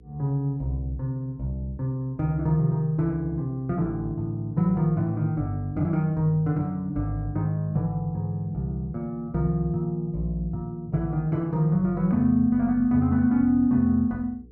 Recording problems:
hum; 60 Hz, harmonics up to 480 Hz, SNR 27 dB

